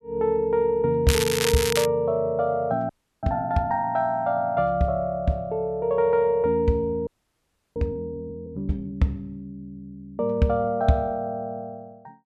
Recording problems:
crackling; at 1 s; loose cable, SNR 3 dB
frozen audio; at 3 s and at 7 s for 0.5 s

